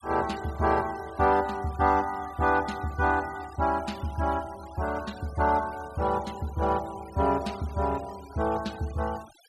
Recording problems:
noise reduction artefacts; signal-to-artefact ratio 20 dB

